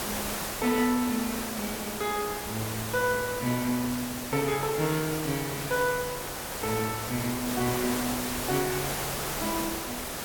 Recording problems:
background hiss; slope -4 dB per octave, SNR 3 dB

